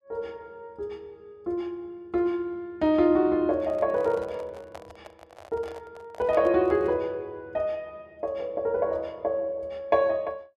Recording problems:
handling noise; from 3.5 to 7 s; peak -9 dB vs average level

